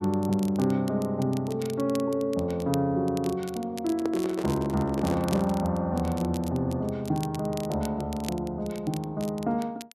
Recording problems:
crackling; vinyl, SNR 18 dB
microphone handling noise; from 4 to 5.5 s; peak 0 dB vs average level

